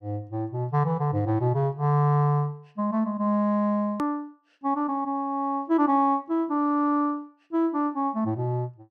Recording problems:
hard cut with a click; at 4 s

